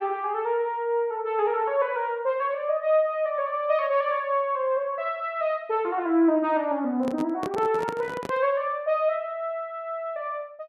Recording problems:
microphone handling noise; from 7 to 8.5 s; peak -3 dB vs average level

